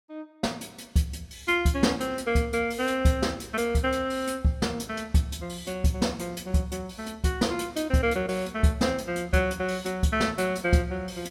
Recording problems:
none

